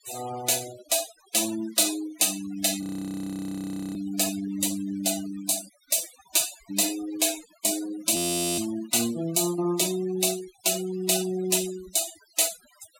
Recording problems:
denoising artefacts; signal-to-artefact ratio 13 dB
audio freezing; at 3 s for 1 s and at 8 s

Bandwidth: 16.5 kHz